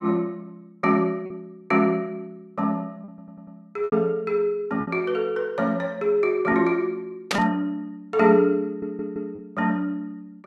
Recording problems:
lost packets; 3% of the sound replaced, filled with repeated pitch periods
audio stuttering; at 3 s and at 8.5 s
static burst; at 7.5 s; peak +4 dB vs average level

